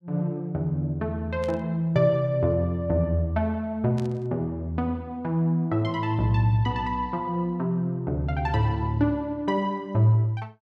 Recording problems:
burst of static; at 1.5 s and at 4 s; peak -14 dB vs average level

